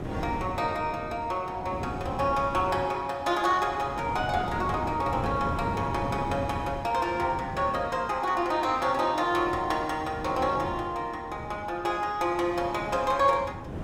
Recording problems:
wind noise; below 430 Hz, SNR 10 dB

